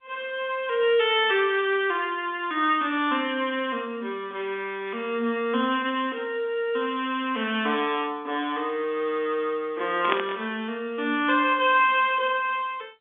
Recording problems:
phone line; 190 Hz to 3.5 kHz, G.711
burst of static; at 10 s; peak +3 dB vs average level

